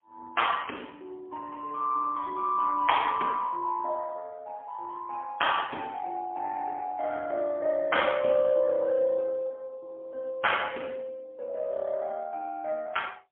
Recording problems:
phone line; 260 Hz to 3.3 kHz, AMR-NB, then MP3

